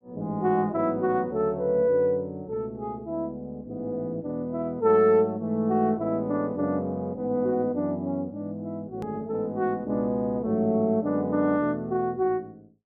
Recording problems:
click at an edit; at 9 s

